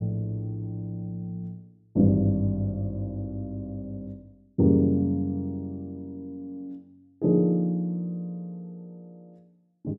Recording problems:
none

